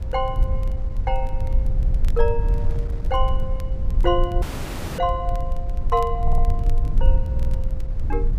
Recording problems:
low-frequency rumble; below 54 Hz, strongest tone 22 Hz, SNR -2 dB
wind noise; below 320 Hz, SNR 17 dB
crackle; vinyl, SNR 26 dB
audio stuttering; at 2 s, at 6 s and at 7.5 s
audio cutting out; at 4.5 s for 0.5 s

